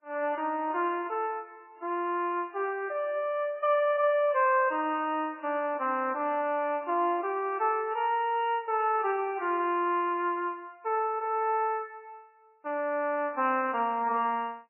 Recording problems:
lossy codec; MP3, log-spectral distance 2 dB, nothing above 2.4 kHz

